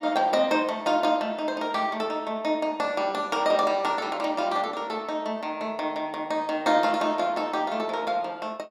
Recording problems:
none

